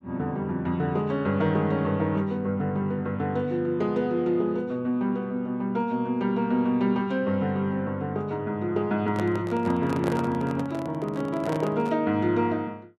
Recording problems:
microphone handling noise; from 9 to 12 s; peak 0 dB vs average level

